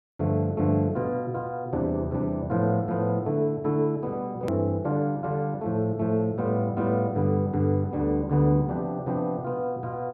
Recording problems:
hard cut with a click; at 4.5 s

